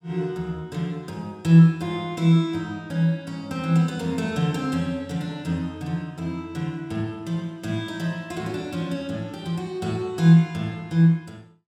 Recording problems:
none

